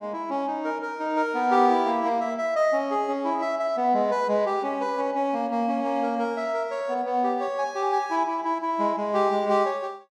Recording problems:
none

